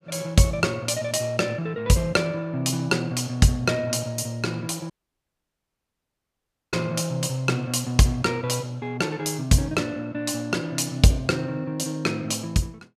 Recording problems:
audio cutting out; at 5 s for 2 s

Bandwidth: 15 kHz